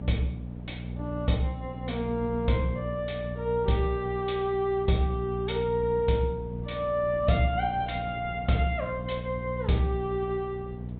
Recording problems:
treble cut off; nothing above 4 kHz
electrical hum; 60 Hz, harmonics up to 480 Hz, SNR 8 dB
wind on the microphone; below 370 Hz, SNR 19 dB

